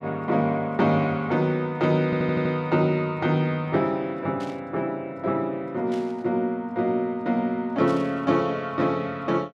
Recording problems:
audio stuttering; at 2 s
burst of static; at 4.5 s, at 6 s and at 8 s; peak -14 dB vs average level

